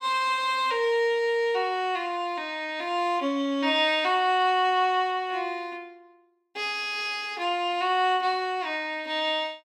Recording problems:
none

